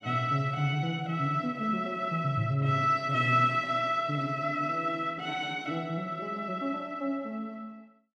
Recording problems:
none

